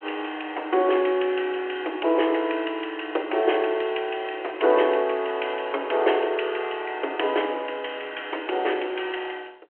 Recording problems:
telephone audio; 300 Hz to 3.2 kHz, G.726

